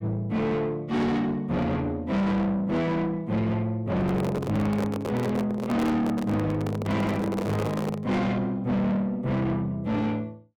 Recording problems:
distorted audio; soft clipping, signal-to-distortion ratio 7 dB
handling noise; from 4 to 8 s; peak +3 dB vs average level

